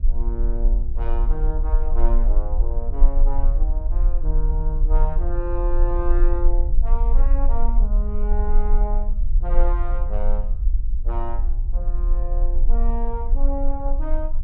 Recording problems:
rumble; below 38 Hz, strongest tone 22 Hz, SNR -9 dB

